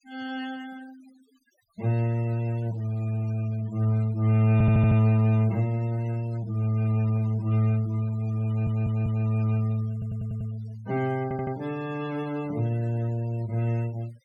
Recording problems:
denoising artefacts; signal-to-artefact ratio 23 dB
stutter; 4 times, first at 4.5 s

